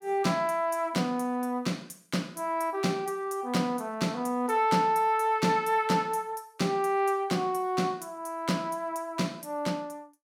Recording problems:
none

